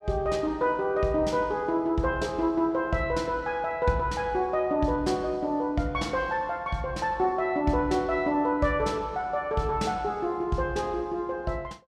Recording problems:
none

